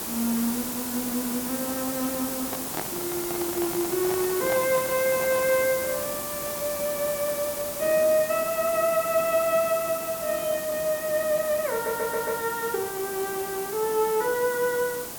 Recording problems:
background hiss; SNR 5 dB
handling noise; from 2.5 to 5.5 s; peak -2 dB vs average level
audio stuttering; at 12 s

